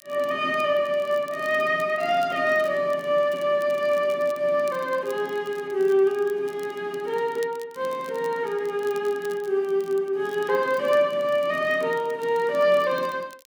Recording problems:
crackling; vinyl, SNR 26 dB

